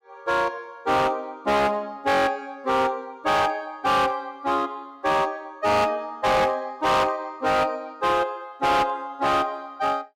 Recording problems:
distorted audio; hard clipping, signal-to-distortion ratio 8 dB

